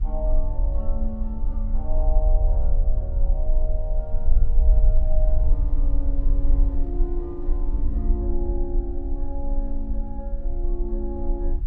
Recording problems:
low-frequency rumble; below 44 Hz, strongest tone 20 Hz, SNR -10 dB
wind on the microphone; below 260 Hz, SNR 18 dB

